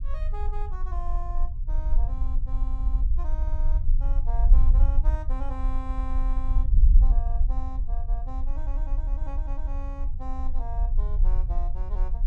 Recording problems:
low-frequency rumble; below 46 Hz, strongest tone 24 Hz, SNR -15 dB

